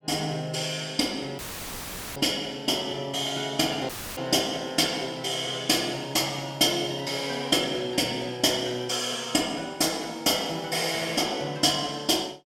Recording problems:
audio cutting out; at 1.5 s for 1 s and at 4 s; filled with static

